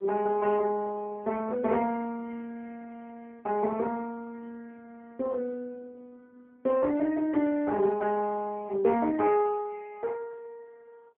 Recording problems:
phone line; 220 Hz to 2.5 kHz, AMR-NB

